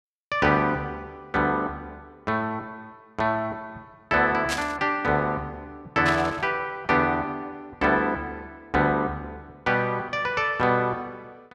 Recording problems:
burst of static; at 4.5 s and at 6 s; peak 0 dB vs average level

